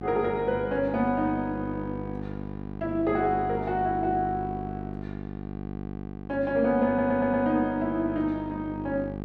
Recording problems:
electrical hum; 50 Hz, harmonics up to 1.2 kHz, SNR 9 dB
stutter; at 7 s

